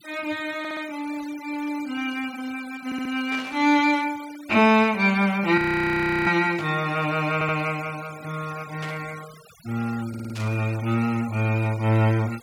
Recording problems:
denoising artefacts; signal-to-artefact ratio 20 dB
stutter; 4 times, first at 0.5 s
burst of static; 4 times, first at 3.5 s; peak -8 dB vs average level
frozen audio; at 5.5 s for 0.5 s

